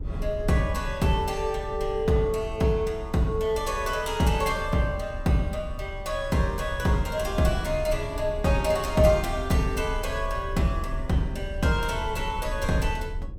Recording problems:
rumble; below 76 Hz, strongest tone 32 Hz, SNR 11 dB

